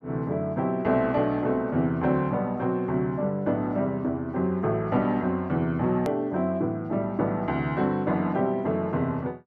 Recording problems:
edit click; at 6 s

